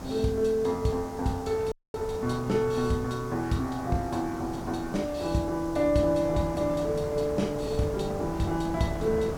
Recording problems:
hiss; SNR 21 dB
wind on the microphone; below 620 Hz, SNR 11 dB
audio cutting out; at 1.5 s

